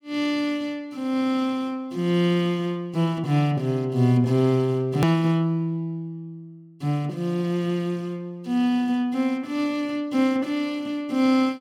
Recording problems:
hard cut with a click; at 5 s

